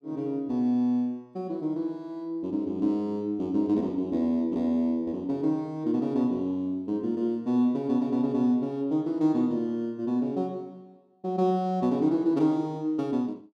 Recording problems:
none

